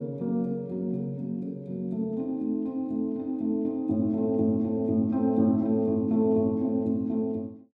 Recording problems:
none

